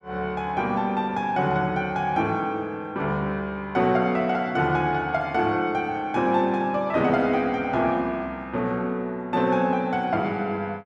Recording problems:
none

